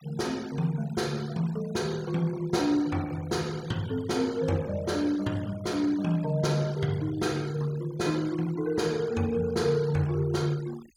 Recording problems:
denoising artefacts; signal-to-artefact ratio 20 dB

